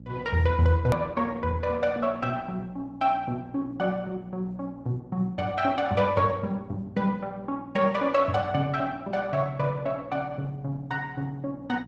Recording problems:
codec artefacts; Opus, log-spectral distance 2 dB, nothing above 13.1 kHz
hum; 60 Hz, harmonics up to 540 Hz, SNR 18 dB
click at an edit; at 1 s

